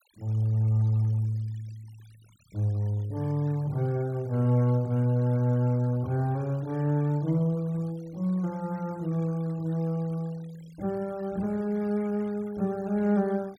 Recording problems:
noise reduction artefacts; signal-to-artefact ratio 27 dB

